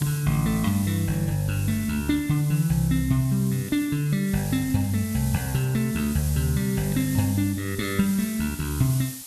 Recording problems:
background hiss; SNR 13 dB

